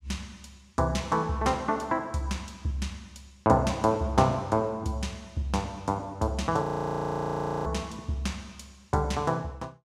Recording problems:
audio freezing; at 6.5 s for 1 s

